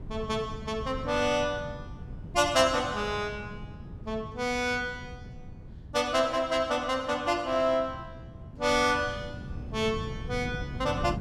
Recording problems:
wind on the microphone; below 180 Hz, SNR 13 dB

